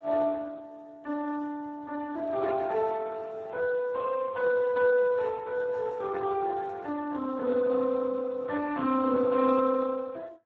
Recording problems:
lossy compression; AAC, then Speex, log-spectral distance 3 dB

